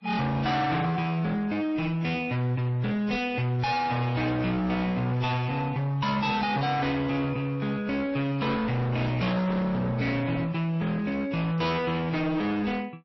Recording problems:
lossy codec; AAC, then MP3, log-spectral distance 3 dB, nothing above 5.7 kHz
distorted audio; hard clipping, signal-to-distortion ratio 7 dB

